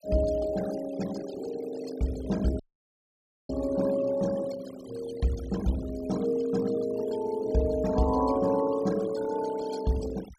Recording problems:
denoising artefacts; signal-to-artefact ratio 16 dB
dropout; at 2.5 s for 1 s

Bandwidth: 14.5 kHz